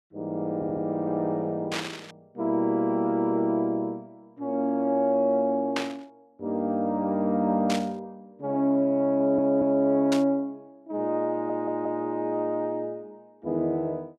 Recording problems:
stutter; at 0.5 s, at 9 s and at 11 s
burst of static; 4 times, first at 1.5 s; peak +1 dB vs average level

